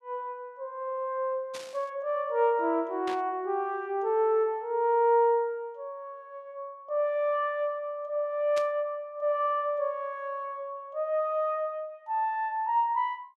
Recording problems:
static burst; at 1.5 s, at 3 s and at 8.5 s; peak -6 dB vs average level

